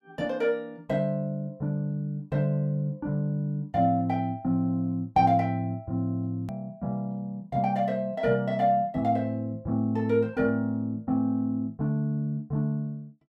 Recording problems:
edit click; at 6.5 s

